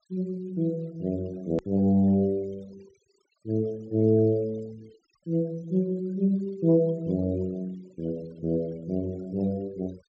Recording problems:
treble cut off; nothing above 8 kHz
denoising artefacts; signal-to-artefact ratio 27 dB
click at an edit; at 1.5 s

